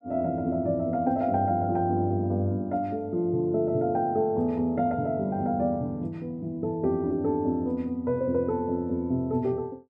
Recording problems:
none

